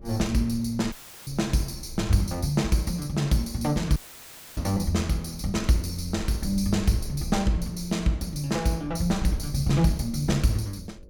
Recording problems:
electrical hum; 50 Hz, harmonics up to 600 Hz, SNR 30 dB
rumble; below 78 Hz, SNR 16 dB
dropout; at 1 s and at 4 s for 0.5 s; filled with static

